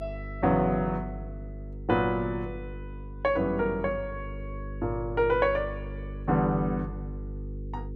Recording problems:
mains hum; 50 Hz, harmonics up to 500 Hz, SNR 11 dB

